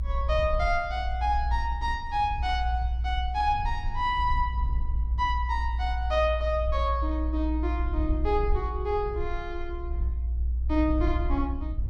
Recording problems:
low-frequency rumble; below 62 Hz, strongest tone 60 Hz, SNR 2 dB

